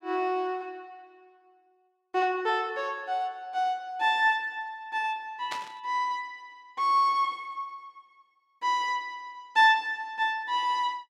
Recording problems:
burst of static; at 5.5 s; peak -5 dB vs average level

